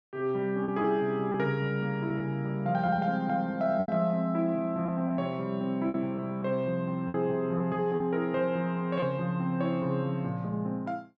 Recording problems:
lost packets; 5% of the sound replaced, filled with repeated pitch periods

